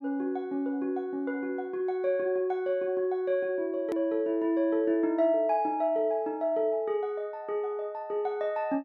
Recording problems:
click at an edit; at 4 s

